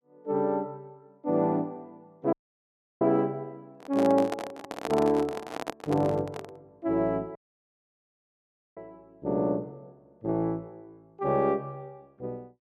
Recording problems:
dropout; at 2.5 s for 0.5 s and at 7.5 s for 1.5 s
microphone handling noise; from 3.5 to 6.5 s; peak 0 dB vs average level

